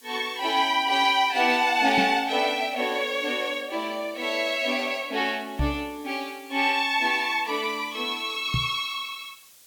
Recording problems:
hiss; slope +2 dB per octave, SNR 25 dB
microphone bump; at 2 s, at 5.5 s and at 8.5 s; peak +1 dB vs average level

